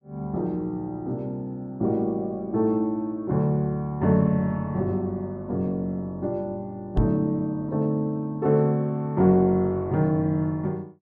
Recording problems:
microphone thump; at 7 s; peak +6 dB vs average level

